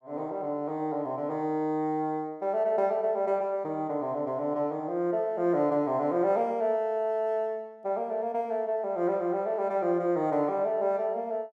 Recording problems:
none

